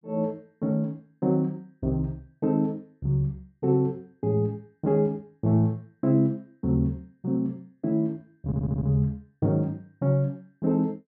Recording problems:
audio stuttering; at 8.5 s

